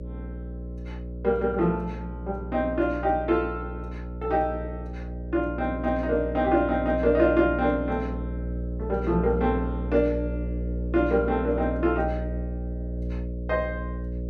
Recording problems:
electrical hum; 60 Hz, harmonics up to 600 Hz, SNR 7 dB

